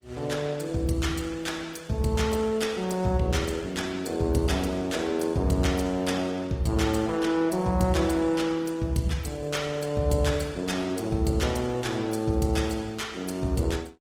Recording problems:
lossy codec; Opus, log-spectral distance 4 dB

